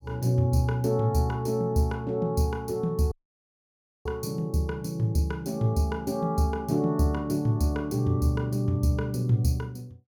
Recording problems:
dropout; at 3 s for 1 s

